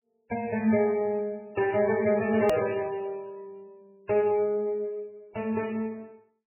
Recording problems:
codec artefacts; AAC, then MP3, log-spectral distance 2 dB, nothing above 20.1 kHz
hard cut with a click; at 2.5 s

